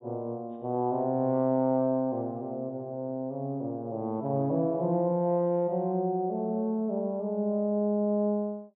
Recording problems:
treble missing; nothing above 4 kHz

